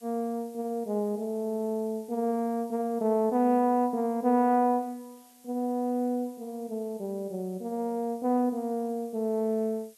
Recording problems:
background hiss; slope +1 dB per octave, SNR 27 dB

